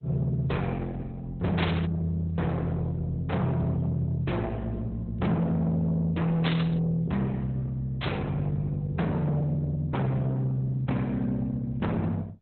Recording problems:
codec artefacts; Opus, log-spectral distance 2 dB, nothing above 4 kHz
distorted audio; soft clipping, signal-to-distortion ratio 6 dB
static burst; at 1.5 s, at 6.5 s and at 8 s; peak +2 dB vs average level

